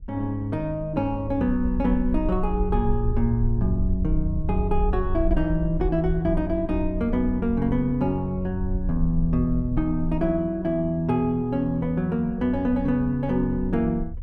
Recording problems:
wind on the microphone; below 60 Hz, SNR 7 dB

